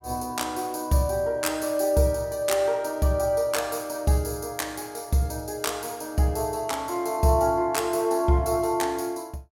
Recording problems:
none

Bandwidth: 17 kHz